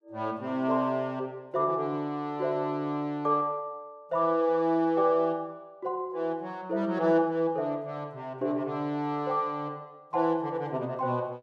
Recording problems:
none

